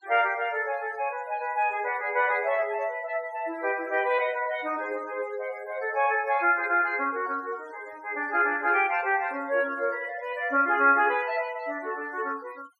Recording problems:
noise reduction artefacts; signal-to-artefact ratio 24 dB

